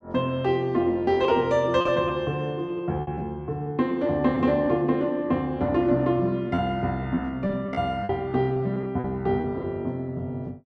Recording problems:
packet loss; 7% of the sound replaced, filled with repeated pitch periods

